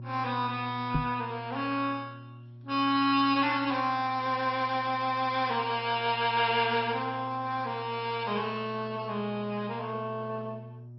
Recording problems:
lossy codec; MP2, log-spectral distance 4 dB, nothing above 5.2 kHz
electrical hum; 60 Hz, harmonics up to 600 Hz, SNR 16 dB
microphone bump; at 1 s; peak +3 dB vs average level

